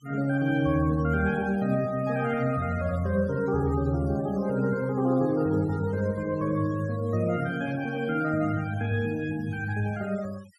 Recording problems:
noise reduction artefacts; signal-to-artefact ratio 24 dB

